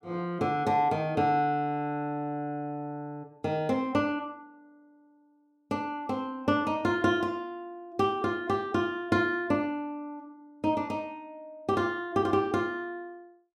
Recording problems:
none

